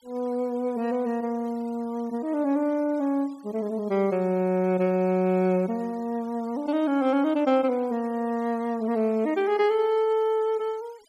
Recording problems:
noise reduction artefacts; signal-to-artefact ratio 28 dB

